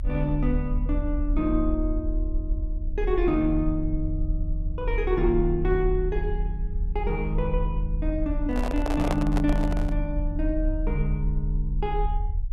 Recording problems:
low-frequency rumble; below 46 Hz, strongest tone 36 Hz, SNR 2 dB
microphone handling noise; from 8.5 to 10 s; peak +3 dB vs average level

